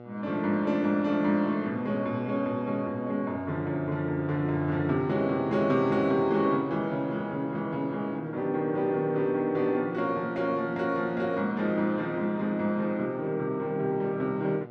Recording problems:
hum; 60 Hz, harmonics up to 1.6 kHz, SNR 19 dB

